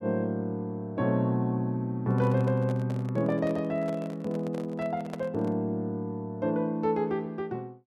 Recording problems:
microphone handling noise; from 2 to 5.5 s; peak -5 dB vs average level

